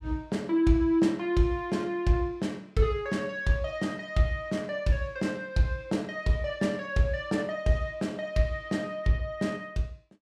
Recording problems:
none

